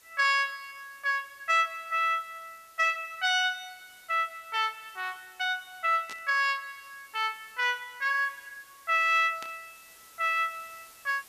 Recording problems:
hiss; slope 0 dB per octave, SNR 26 dB
burst of static; at 6 s and at 9.5 s; peak -10 dB vs average level

